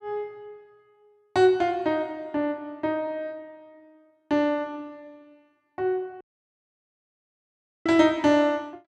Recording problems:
dropout; at 6 s for 1.5 s

